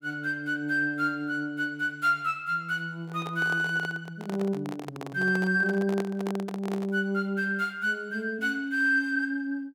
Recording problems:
microphone handling noise; from 3 to 7 s; peak -3 dB vs average level

